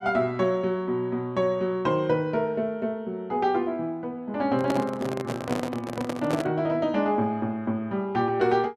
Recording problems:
microphone handling noise; from 4.5 to 6.5 s; peak +1 dB vs average level

